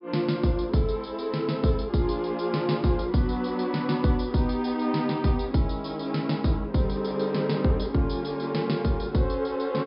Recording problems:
treble cut off; nothing above 5.5 kHz

